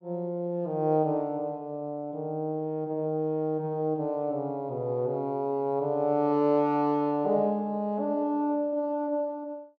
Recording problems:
none

